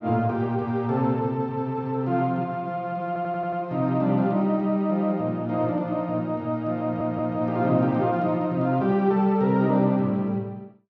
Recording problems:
audio stuttering; at 3 s and at 7 s

